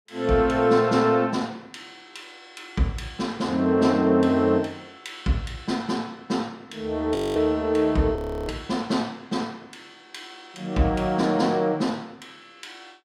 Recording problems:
audio freezing; at 7 s and at 8 s

